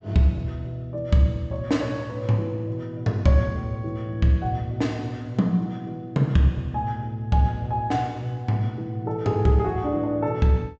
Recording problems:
treble missing; nothing above 8 kHz

